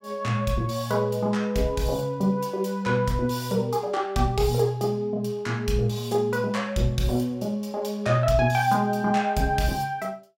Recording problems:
none

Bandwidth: 16.5 kHz